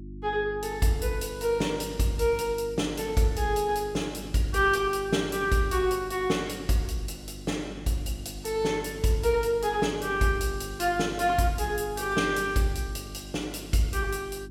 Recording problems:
hum; 50 Hz, harmonics up to 350 Hz, SNR 15 dB

